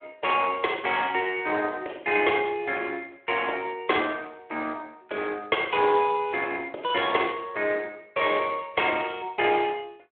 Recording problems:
phone line; 340 Hz to 3.4 kHz, Speex

